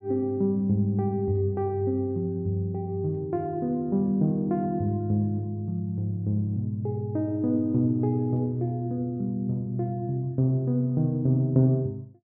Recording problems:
none

